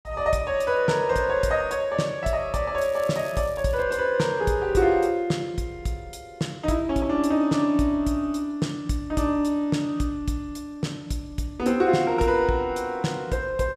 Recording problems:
crackling; from 3 to 4 s; loose cable, SNR 23 dB

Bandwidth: 15 kHz